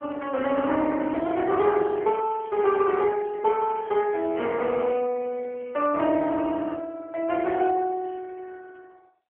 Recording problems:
telephone audio; 280 Hz to 3.1 kHz, AMR-NB

